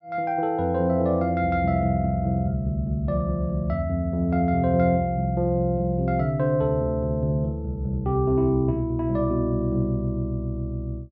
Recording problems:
none

